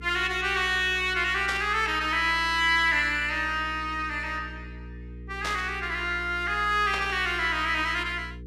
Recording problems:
electrical hum; 60 Hz, harmonics up to 480 Hz, SNR 17 dB
burst of static; at 1.5 s, at 5.5 s and at 7 s; peak -4 dB vs average level

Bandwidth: 14.5 kHz